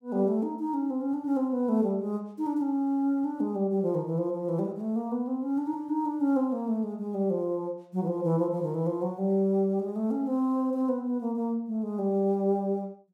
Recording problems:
none

